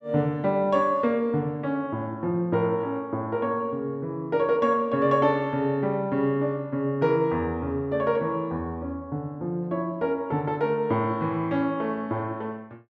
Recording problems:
none

